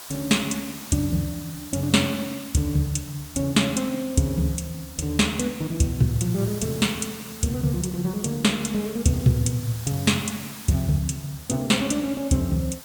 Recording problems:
background hiss; SNR 15 dB

